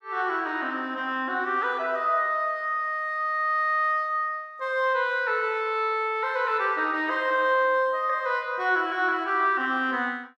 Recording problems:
none

